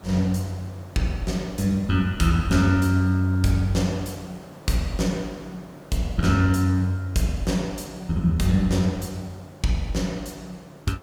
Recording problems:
hiss; slope -8 dB per octave, SNR 23 dB

